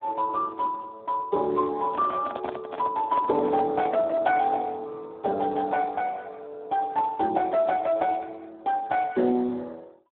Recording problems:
phone line; 220 Hz to 3 kHz, Speex
handling noise; from 2 to 4 s; peak -1 dB vs average level

